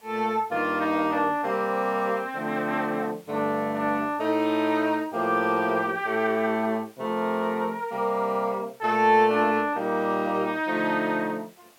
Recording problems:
hiss; slope -2 dB per octave, SNR 29 dB

